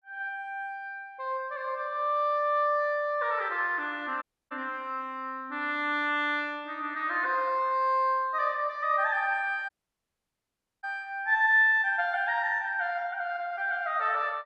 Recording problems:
audio cutting out; at 4 s and at 9.5 s for 1 s

